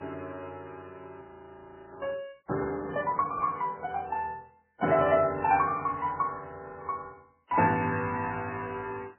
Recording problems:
lossy compression; MP3, then MP3, log-spectral distance 3 dB, nothing above 2.7 kHz
frozen audio; at 1 s for 0.5 s

